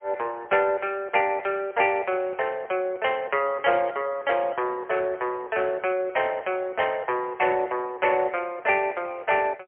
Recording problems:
phone line; 320 Hz to 3.2 kHz, AMR-NB, then MP3

